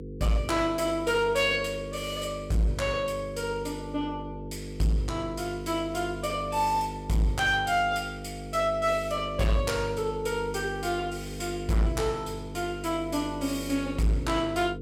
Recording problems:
distorted audio; hard clipping, signal-to-distortion ratio 11 dB
hum; 50 Hz, harmonics up to 500 Hz, SNR 10 dB

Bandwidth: 16.5 kHz